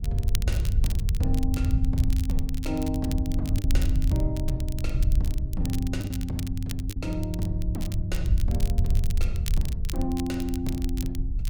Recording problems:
low-frequency rumble; below 76 Hz, SNR -3 dB
crackling; vinyl, SNR 11 dB
lost packets; 1.5% of the sound replaced, filled with the last packet

